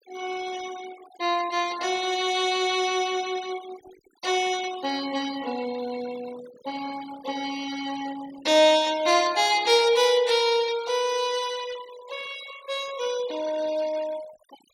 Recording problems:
noise reduction artefacts; signal-to-artefact ratio 18 dB

